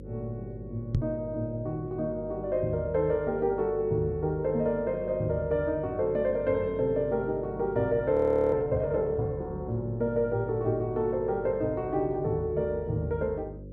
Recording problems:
hum; 50 Hz, harmonics up to 550 Hz, SNR 15 dB
knock on the microphone; at 1 s; peak +4 dB vs average level
audio freezing; at 8 s

